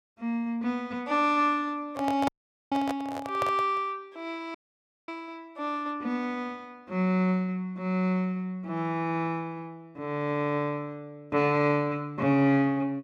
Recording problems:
handling noise; from 2 to 4 s; peak 0 dB vs average level
audio cutting out; at 2.5 s and at 4.5 s for 0.5 s

